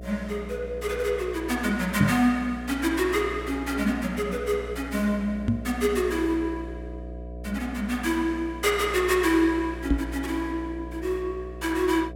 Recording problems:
electrical hum; 60 Hz, harmonics up to 720 Hz, SNR 12 dB
microphone bump; at 2 s, at 5.5 s and at 10 s; peak +8 dB vs average level

